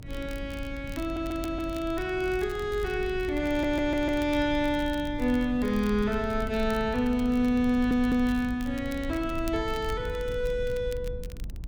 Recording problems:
rumble; below 94 Hz, SNR 11 dB
crackling; vinyl, SNR 22 dB
audio stuttering; at 1 s, at 3.5 s and at 7.5 s

